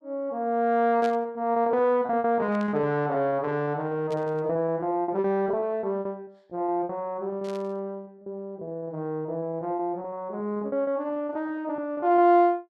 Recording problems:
packet loss; 18% of the sound replaced, filled with repeated pitch periods
burst of static; 4 times, first at 1 s; peak -9 dB vs average level

